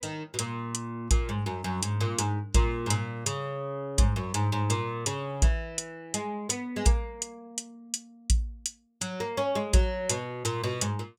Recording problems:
none

